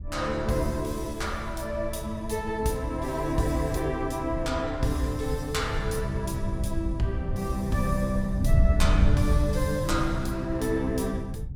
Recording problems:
wind on the microphone; below 96 Hz, SNR 3 dB

